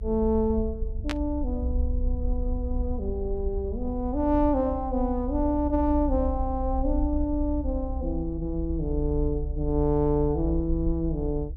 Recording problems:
rumble; below 64 Hz, strongest tone 34 Hz, SNR 4 dB
static burst; at 1 s; peak 0 dB vs average level

